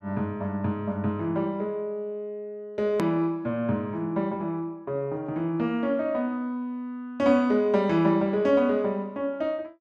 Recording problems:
hard cut with a click; at 3 s

